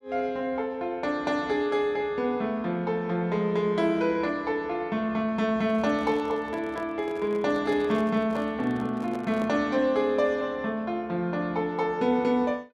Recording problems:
handling noise; from 5.5 to 9.5 s; peak -7 dB vs average level

